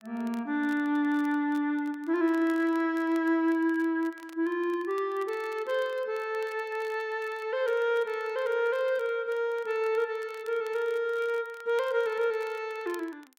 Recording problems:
crackle; vinyl, SNR 26 dB

